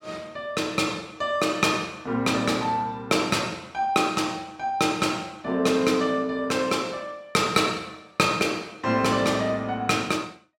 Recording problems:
none

